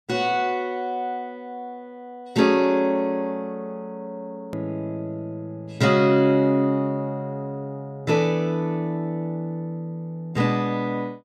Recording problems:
click at an edit; at 4.5 s

